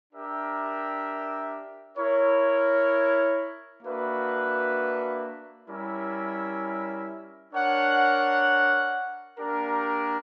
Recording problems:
none

